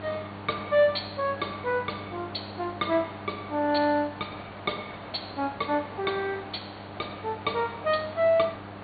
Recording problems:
low-pass filter; nothing above 4.6 kHz
electrical hum; 50 Hz, harmonics up to 1.5 kHz, SNR 16 dB
background hiss; SNR 14 dB

